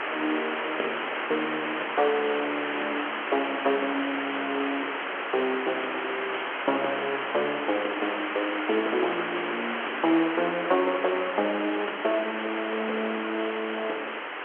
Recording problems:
phone line; 260 Hz to 3.2 kHz, G.711
background hiss; SNR 2 dB

